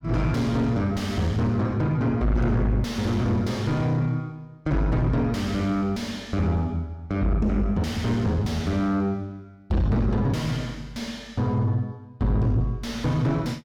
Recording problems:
distorted audio; soft clipping, signal-to-distortion ratio 6 dB

